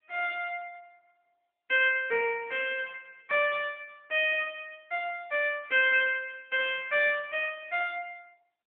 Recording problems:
telephone audio; 300 Hz to 3.5 kHz, AMR-NB

